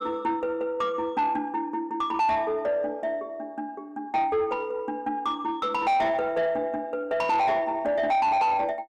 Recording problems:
distortion; soft clipping, signal-to-distortion ratio 7 dB

